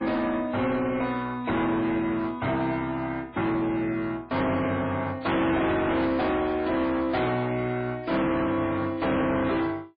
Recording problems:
codec artefacts; MP3, log-spectral distance 2 dB
distortion; hard clipping, uneven, signal-to-distortion ratio 7 dB

